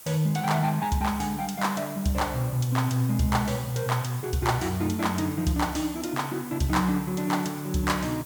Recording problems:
hiss; slope -1 dB per octave, SNR 15 dB

